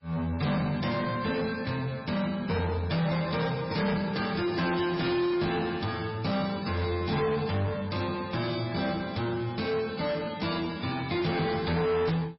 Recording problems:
lossy codec; MP3, log-spectral distance 6 dB, nothing above 5.2 kHz
distortion; soft clipping, signal-to-distortion ratio 8 dB

